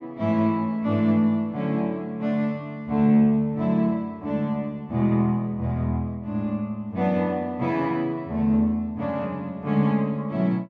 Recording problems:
none

